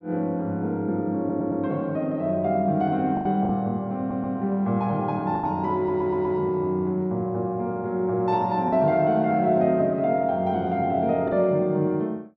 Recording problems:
lost packets; 3% of the sound replaced, filled with the last packet
audio stuttering; at 1 s, at 4 s and at 6 s

